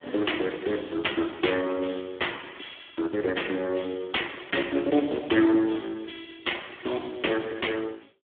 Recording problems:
phone line; 260 Hz to 3.6 kHz, Speex

